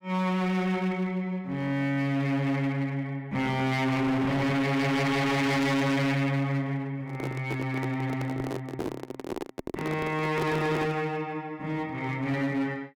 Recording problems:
distorted audio; hard clipping, uneven, signal-to-distortion ratio 5 dB
microphone handling noise; from 7 to 11 s; peak 0 dB vs average level

